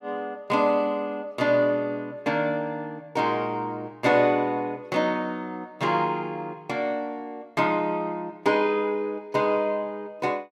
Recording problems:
none

